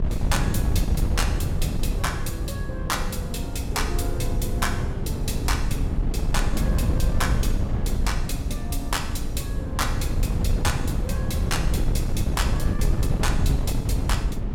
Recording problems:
wind noise; below 120 Hz, SNR -4 dB

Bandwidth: 17 kHz